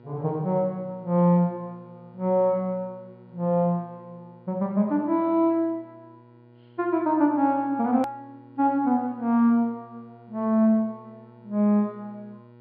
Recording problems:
treble cut off; nothing above 5 kHz
hum; 60 Hz, harmonics up to 1.4 kHz, SNR 27 dB
click at an edit; at 8 s

